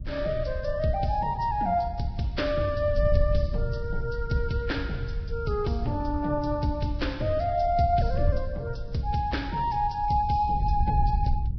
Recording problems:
lossy codec; Vorbis, log-spectral distance 2 dB, nothing above 5.5 kHz
wind on the microphone; below 82 Hz, SNR 6 dB

